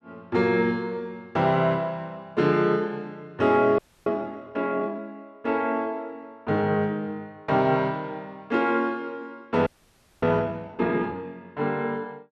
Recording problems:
frozen audio; at 4 s and at 9.5 s for 0.5 s

